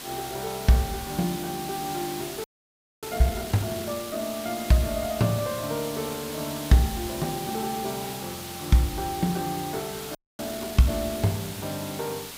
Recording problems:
background hiss; slope -1 dB per octave, SNR 9 dB
audio freezing; at 2.5 s for 0.5 s and at 10 s

